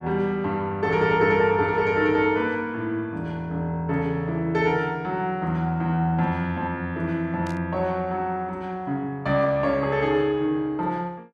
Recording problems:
static burst; at 7.5 s; peak -15 dB vs average level

